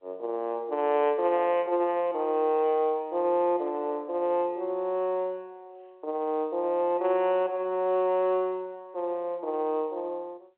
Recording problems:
telephone audio; 300 Hz to 3.3 kHz, G.711

